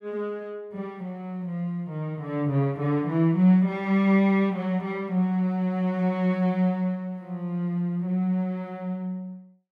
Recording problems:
none

